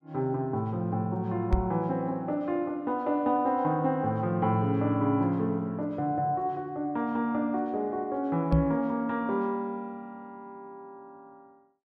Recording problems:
knock on the microphone; at 1.5 s and at 8.5 s; peak +7 dB vs average level

